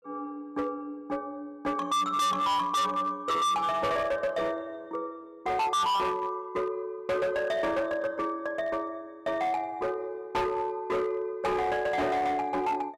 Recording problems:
distorted audio; hard clipping, signal-to-distortion ratio 6 dB

